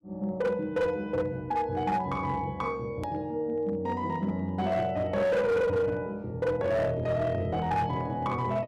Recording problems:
distorted audio; hard clipping, signal-to-distortion ratio 12 dB
click at an edit; at 3 s

